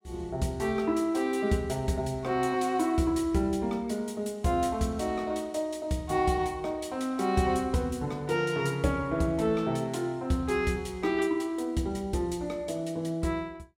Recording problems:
none

